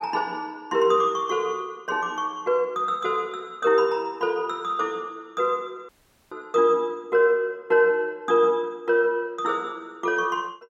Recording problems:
audio cutting out; at 6 s

